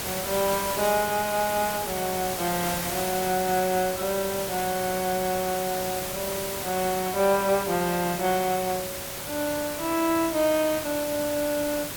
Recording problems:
background hiss; slope -2 dB per octave, SNR 5 dB

